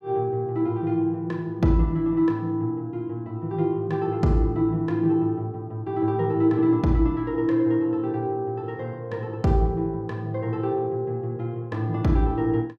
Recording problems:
none

